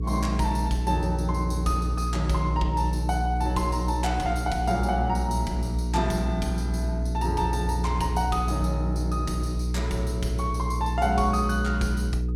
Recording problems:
electrical hum; 60 Hz, harmonics up to 480 Hz, SNR 0 dB

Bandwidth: 16.5 kHz